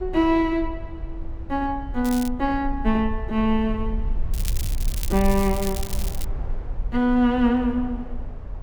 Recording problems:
rumble; below 56 Hz, SNR 9 dB
wind noise; below 870 Hz, SNR 25 dB
crackle; at 2 s and from 4.5 to 6 s; loose cable, SNR 12 dB

